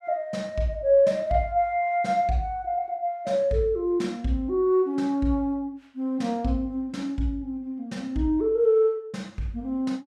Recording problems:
none

